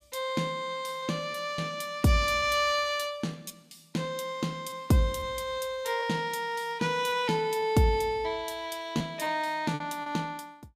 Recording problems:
packet loss; 3% of the sound replaced, filled with repeated pitch periods

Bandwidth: 15.5 kHz